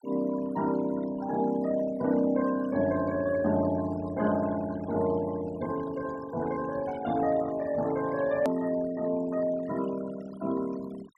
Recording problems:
noise reduction artefacts; signal-to-artefact ratio 17 dB
edit click; at 8.5 s

